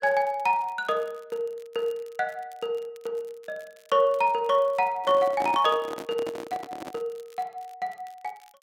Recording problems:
crackle; vinyl, SNR 29 dB
handling noise; from 5 to 7 s; peak -3 dB vs average level

